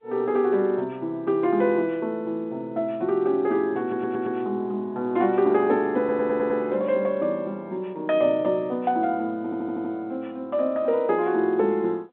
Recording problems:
telephone audio; 220 Hz to 3.8 kHz, G.711
stutter; at 4 s, at 6 s and at 9.5 s

